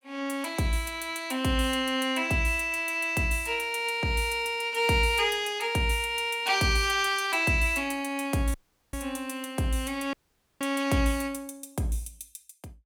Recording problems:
dropout; at 8.5 s and at 10 s

